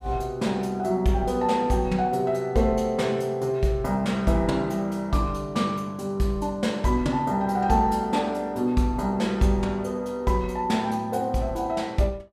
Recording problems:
none

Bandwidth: 15.5 kHz